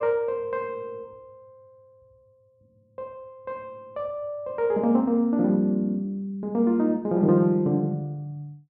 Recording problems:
none

